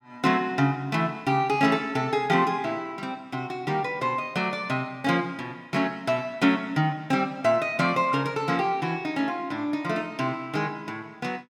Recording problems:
none

